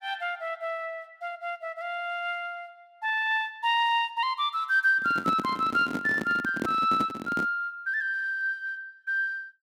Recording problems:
handling noise; from 5 to 7.5 s; peak +1 dB vs average level

